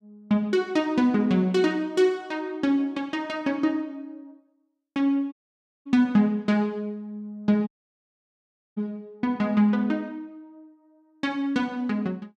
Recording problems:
audio cutting out; at 5.5 s for 0.5 s and at 7.5 s for 1 s

